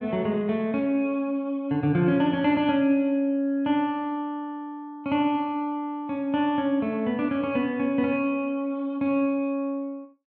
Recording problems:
none

